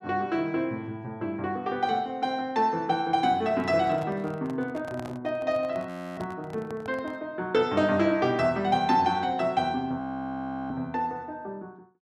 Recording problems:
handling noise; from 3.5 to 7 s; peak -8 dB vs average level
frozen audio; at 6 s and at 10 s for 0.5 s

